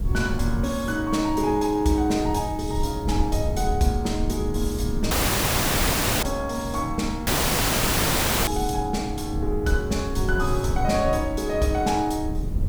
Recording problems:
background hiss; slope +1 dB per octave, SNR 28 dB
low-frequency rumble; below 100 Hz, SNR 5 dB
audio cutting out; at 5 s for 1 s and at 7.5 s for 1 s

